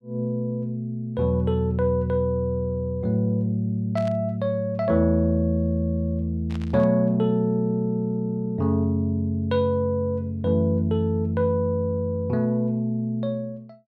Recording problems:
static burst; at 4 s and at 6.5 s; peak -14 dB vs average level

